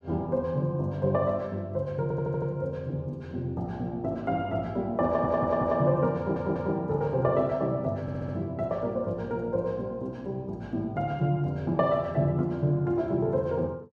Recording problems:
audio stuttering; 4 times, first at 2 s

